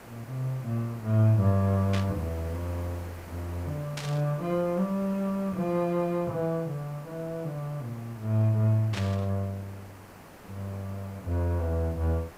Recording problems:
background hiss; SNR 18 dB
burst of static; at 2 s, at 4 s and at 9 s; peak -3 dB vs average level

